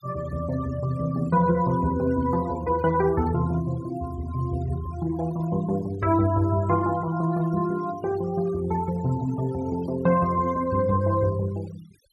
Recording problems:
denoising artefacts; signal-to-artefact ratio 20 dB

